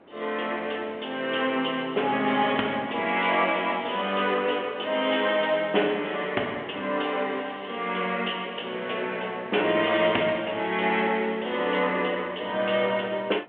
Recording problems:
phone line; 300 Hz to 3.4 kHz, G.726
wind on the microphone; below 840 Hz, SNR 22 dB

